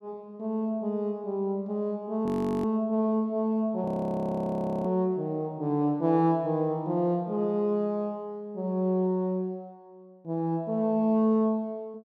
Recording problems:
frozen audio; at 2.5 s and at 4 s for 1 s

